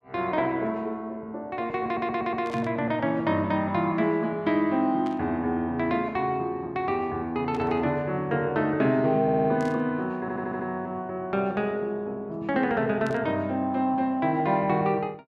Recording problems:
audio stuttering; at 2 s, at 9 s and at 10 s
burst of static; 5 times, first at 2.5 s; peak -13 dB vs average level

